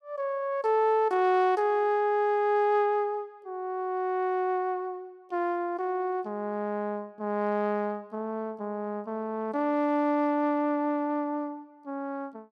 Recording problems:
none

